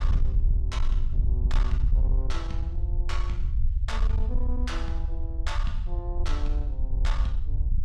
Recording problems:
distorted audio; soft clipping, signal-to-distortion ratio 11 dB
low-frequency rumble; below 58 Hz, SNR -9 dB

